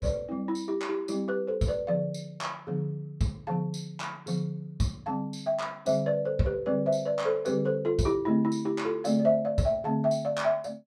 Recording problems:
none

